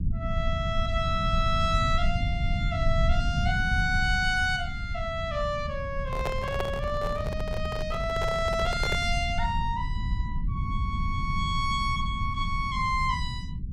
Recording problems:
rumble; below 110 Hz, SNR 3 dB
handling noise; from 6 to 9 s; peak +2 dB vs average level

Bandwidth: 16 kHz